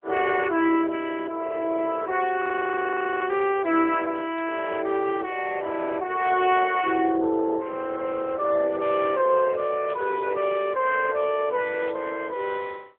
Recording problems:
telephone audio; 280 Hz to 3.4 kHz, AMR-NB
frozen audio; at 2.5 s for 1 s
static burst; 4 times, first at 4.5 s; peak -13 dB vs average level

